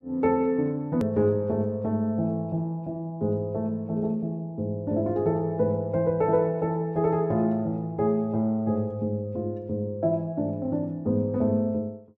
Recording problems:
click at an edit; at 1 s

